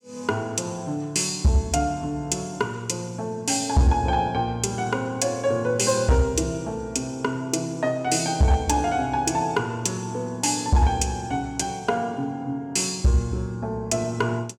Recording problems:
distorted audio; hard clipping, signal-to-distortion ratio 12 dB

